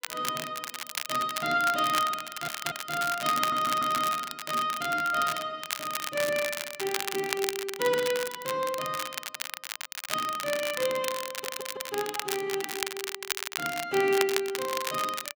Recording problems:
crackle; vinyl, SNR 5 dB
stutter; at 2.5 s, at 3.5 s and at 11 s

